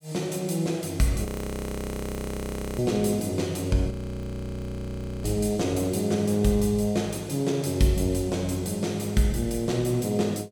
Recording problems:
audio freezing; at 1.5 s for 1.5 s and at 4 s for 1.5 s

